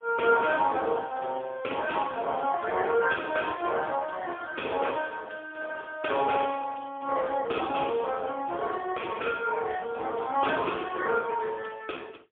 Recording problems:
phone line; 280 Hz to 3.3 kHz, AMR-NB, then MP3

